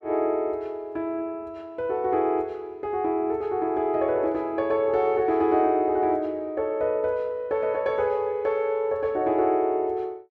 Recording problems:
none

